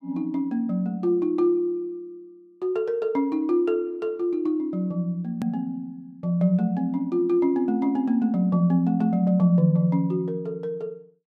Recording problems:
hard cut with a click; at 5.5 s

